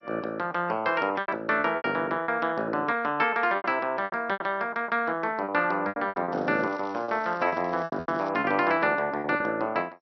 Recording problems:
lossy codec; MP2, then MP3, log-spectral distance 2 dB, nothing above 5.7 kHz
lost packets; 11% of the sound replaced, filled with repeated pitch periods
crackle; from 6.5 to 8.5 s; loose cable, SNR 27 dB

